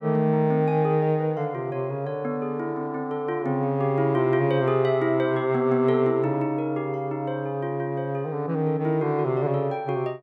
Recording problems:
none

